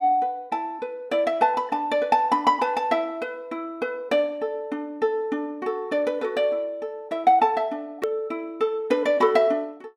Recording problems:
click at an edit; at 8 s

